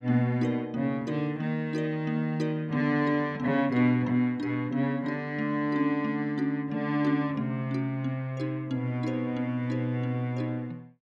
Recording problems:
none

